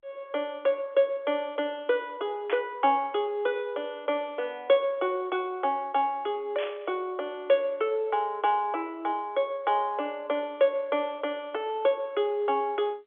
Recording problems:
telephone audio; 300 Hz to 3.5 kHz, G.711
burst of static; at 2.5 s and at 6.5 s; peak -4 dB vs average level

